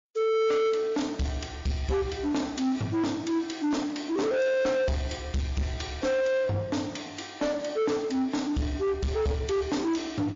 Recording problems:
lossy compression; MP3, log-spectral distance 3 dB, nothing above 6.7 kHz
distortion; soft clipping, signal-to-distortion ratio 7 dB

